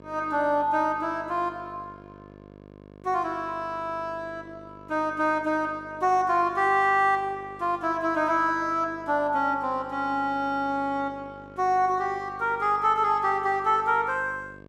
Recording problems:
hum; 50 Hz, harmonics up to 1.8 kHz, SNR 22 dB

